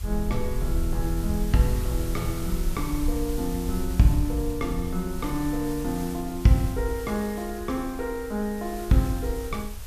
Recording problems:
hiss; slope -1 dB per octave, SNR 14 dB
low-frequency rumble; below 60 Hz, SNR 7 dB

